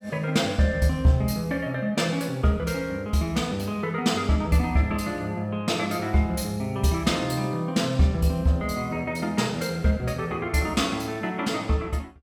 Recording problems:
none

